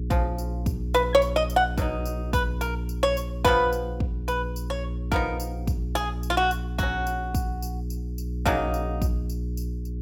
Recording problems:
hum; 60 Hz, harmonics up to 420 Hz, SNR 5 dB

